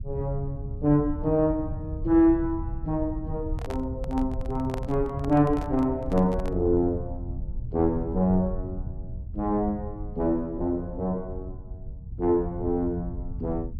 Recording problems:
low-frequency rumble; below 96 Hz, SNR 10 dB
microphone handling noise; from 3.5 to 6.5 s; peak -6 dB vs average level

